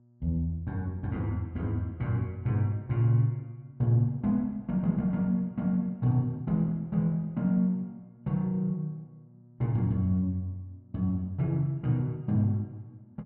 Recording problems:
electrical hum; 60 Hz, harmonics up to 600 Hz, SNR 28 dB

